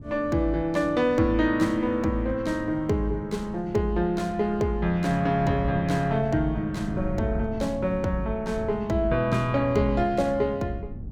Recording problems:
wind on the microphone; below 170 Hz, SNR 13 dB

